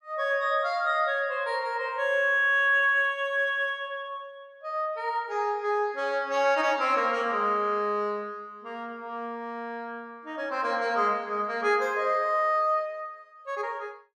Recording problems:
none

